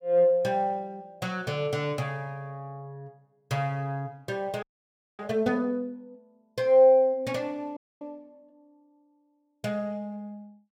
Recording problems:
audio freezing; at 4.5 s for 0.5 s and at 8 s

